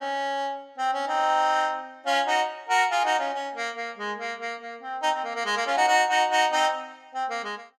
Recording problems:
none

